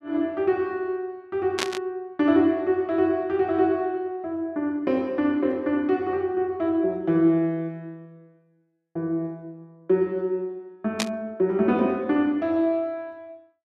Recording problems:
burst of static; at 1.5 s and at 11 s; peak +3 dB vs average level

